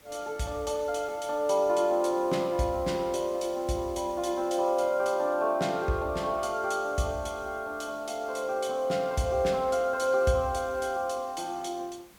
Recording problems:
background hiss; slope -2 dB per octave, SNR 25 dB

